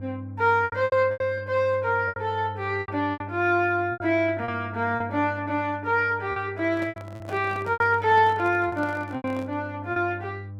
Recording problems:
hum; 50 Hz, harmonics up to 500 Hz, SNR 14 dB
packet loss; 10% of the sound replaced, filled with repeated pitch periods
microphone handling noise; from 6.5 to 9.5 s; peak -10 dB vs average level

